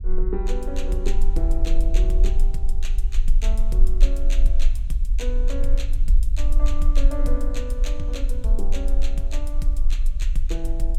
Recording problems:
low-frequency rumble; below 38 Hz, strongest tone 18 Hz, SNR -9 dB

